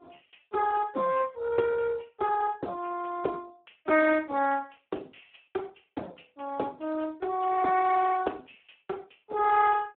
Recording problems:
telephone audio; 260 Hz to 2.6 kHz, Speex

